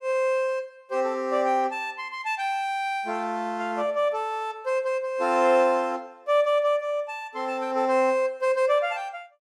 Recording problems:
none

